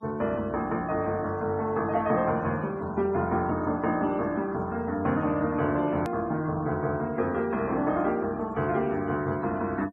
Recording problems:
denoising artefacts; signal-to-artefact ratio 26 dB
click at an edit; at 6 s

